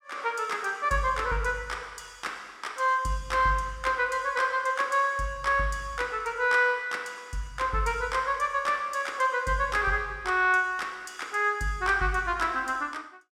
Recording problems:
none

